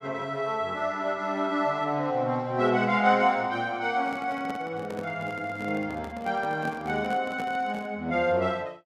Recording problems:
handling noise; from 4 to 8 s; peak -7 dB vs average level

